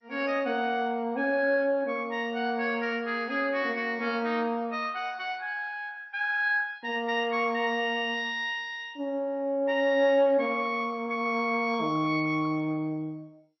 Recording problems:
lossy codec; MP2, then MP2, log-spectral distance 3 dB, nothing above 5.7 kHz

